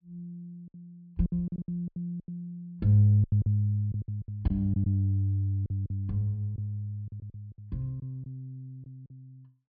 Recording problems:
treble missing; nothing above 5.2 kHz
packet loss; 12% of the sound replaced, filled with silence

